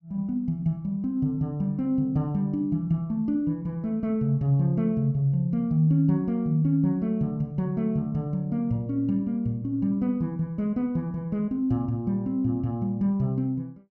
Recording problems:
none

